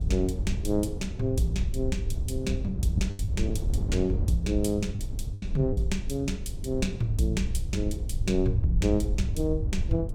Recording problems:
mains hum; 50 Hz, harmonics up to 450 Hz, SNR 21 dB
rumble; below 88 Hz, SNR 3 dB
wind noise; below 270 Hz, SNR 12 dB
packet loss; 3% of the sound replaced, filled with the last packet

